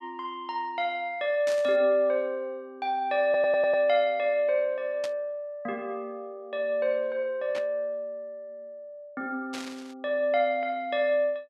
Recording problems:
static burst; 4 times, first at 1.5 s; peak -7 dB vs average level
stutter; at 3 s

